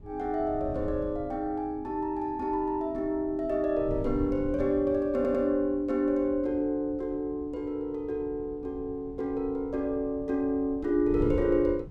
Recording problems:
wind noise; below 150 Hz, SNR 14 dB
audio stuttering; at 5 s

